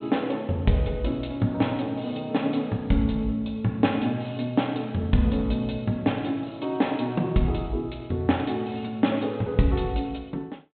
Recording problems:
treble missing; nothing above 4 kHz

